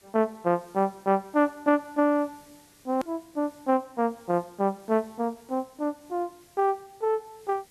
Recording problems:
hiss; SNR 28 dB
edit click; at 3 s

